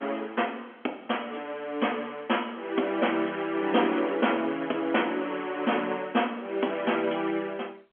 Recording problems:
telephone audio; 220 Hz to 3.3 kHz, G.711

